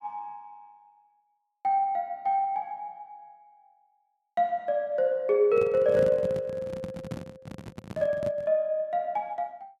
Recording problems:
microphone handling noise; from 5.5 to 8.5 s; peak -4 dB vs average level

